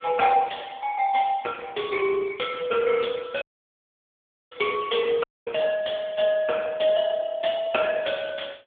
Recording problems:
telephone audio; 260 Hz to 3.4 kHz, AMR-NB
dropout; at 3.5 s for 1 s and at 5 s

